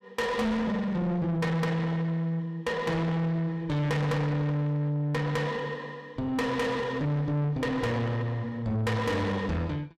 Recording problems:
distorted audio; soft clipping, signal-to-distortion ratio 7 dB

